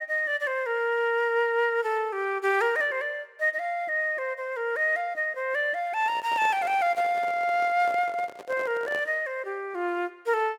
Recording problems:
handling noise; from 6 to 9 s; peak -8 dB vs average level

